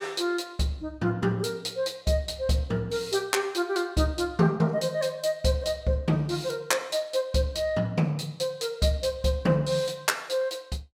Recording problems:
none

